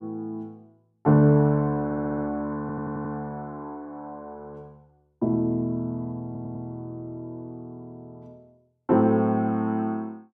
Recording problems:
audio stuttering; at 2 s, at 2.5 s and at 6.5 s

